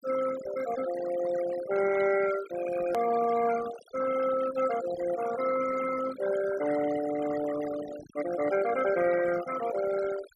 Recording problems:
noise reduction artefacts; signal-to-artefact ratio 11 dB
hard cut with a click; at 3 s

